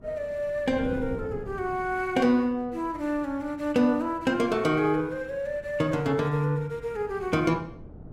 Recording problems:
wind noise; below 280 Hz, SNR 17 dB

